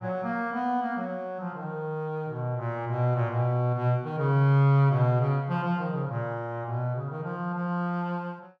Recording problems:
none

